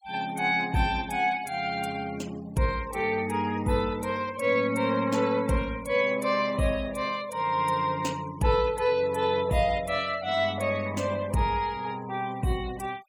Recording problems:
denoising artefacts; signal-to-artefact ratio 22 dB

